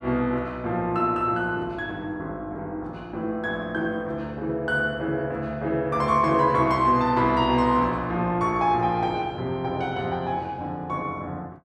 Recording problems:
none

